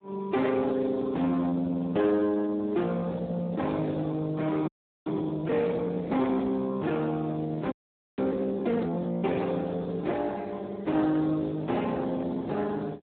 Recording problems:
telephone audio; 190 Hz to 2.1 kHz, Speex
distortion; soft clipping, signal-to-distortion ratio 14 dB
frozen audio; at 4.5 s and at 7.5 s

